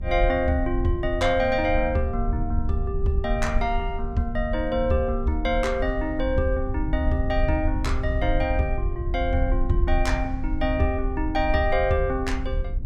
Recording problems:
rumble; below 54 Hz, SNR 7 dB
wind on the microphone; below 82 Hz, SNR 6 dB

